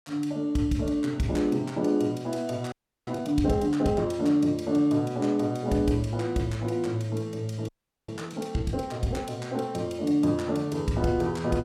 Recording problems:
audio freezing; at 2.5 s and at 7.5 s

